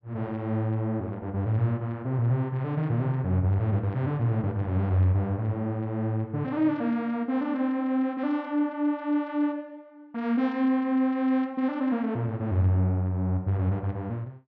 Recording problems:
none

